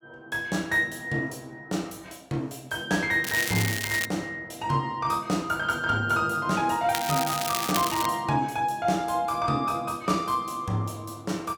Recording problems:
crackling; at 3 s and from 7 to 8 s; loose cable, SNR 4 dB

